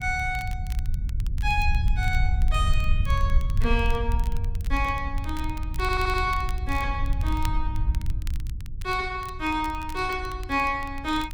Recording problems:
low-frequency rumble; below 72 Hz, SNR 0 dB
crackling; vinyl, SNR 19 dB
audio stuttering; at 6 s

